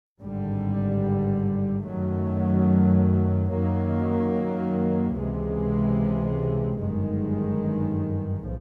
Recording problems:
none

